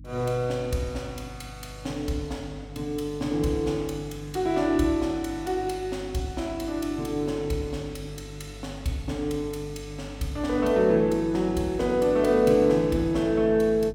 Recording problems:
electrical hum; 50 Hz, harmonics up to 300 Hz, SNR 17 dB

